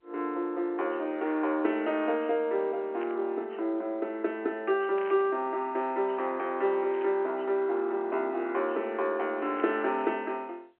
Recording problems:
phone line; 300 Hz to 3.2 kHz, G.711
static burst; 4 times, first at 3 s; peak -11 dB vs average level

